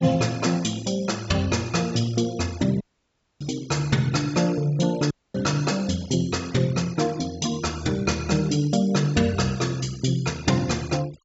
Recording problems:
treble missing; nothing above 8 kHz
noise reduction artefacts; signal-to-artefact ratio 21 dB
dropout; at 3 s for 0.5 s and at 5 s

